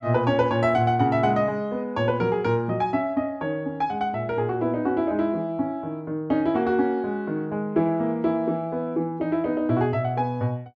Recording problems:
none

